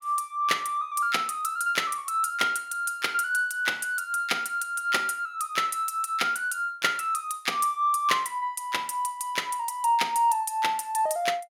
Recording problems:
none

